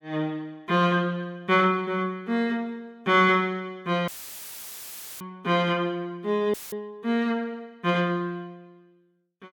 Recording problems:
audio cutting out; at 4 s for 1 s and at 6.5 s; filled with static

